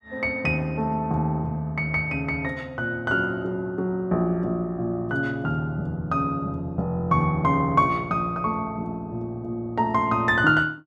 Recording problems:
none

